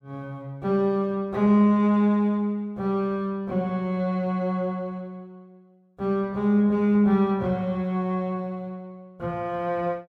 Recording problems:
none

